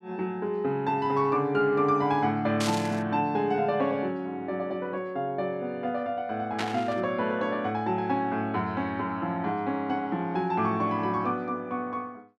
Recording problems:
burst of static; at 2.5 s and at 6.5 s; peak 0 dB vs average level

